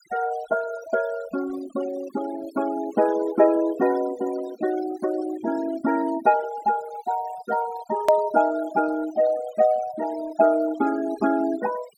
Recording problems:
noise reduction artefacts; signal-to-artefact ratio 16 dB
edit click; at 8 s

